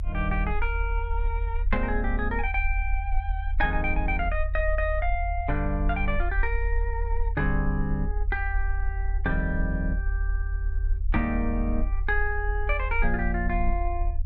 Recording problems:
rumble; below 46 Hz, strongest tone 42 Hz, SNR 0 dB

